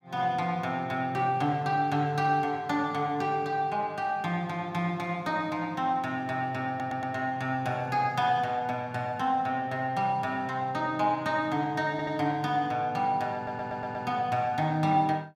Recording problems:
stutter; at 6.5 s, at 12 s and at 13 s

